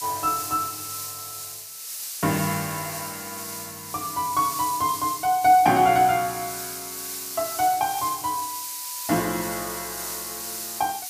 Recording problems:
background hiss; slope +4 dB per octave, SNR 7 dB

